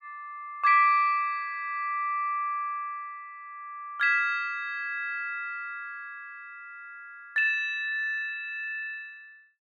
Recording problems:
none

